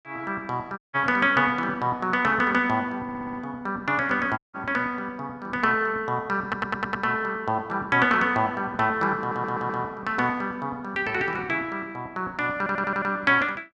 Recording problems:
dropout; at 1 s and at 4.5 s
audio stuttering; 4 times, first at 3 s

